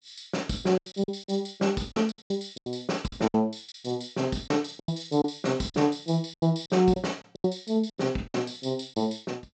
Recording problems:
treble missing; nothing above 8 kHz
lost packets; 12% of the sound replaced, filled with silence

